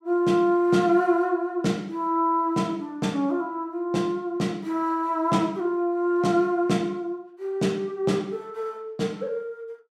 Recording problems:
none

